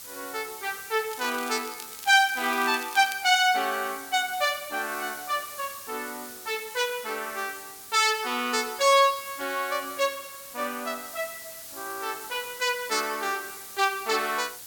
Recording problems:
background hiss; slope +1 dB per octave, SNR 13 dB
crackling; from 1 to 3 s; loose cable, SNR 16 dB

